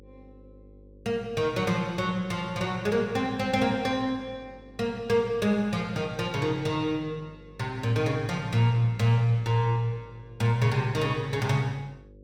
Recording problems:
electrical hum; 50 Hz, harmonics up to 550 Hz, SNR 25 dB

